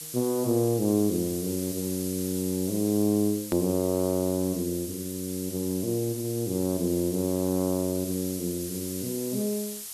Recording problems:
background hiss; SNR 9 dB
edit click; at 3.5 s

